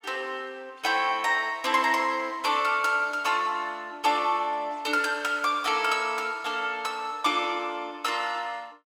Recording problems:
none

